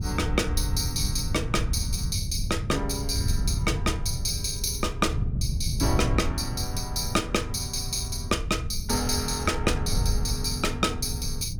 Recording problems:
wind noise; below 120 Hz, SNR 3 dB

